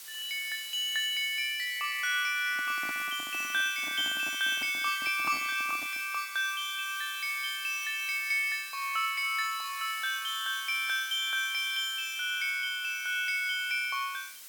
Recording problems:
hiss; slope +4 dB per octave, SNR 13 dB
microphone handling noise; from 2.5 to 6 s; peak -11 dB vs average level

